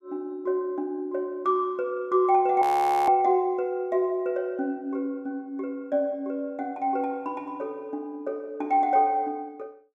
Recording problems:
audio freezing; at 2.5 s

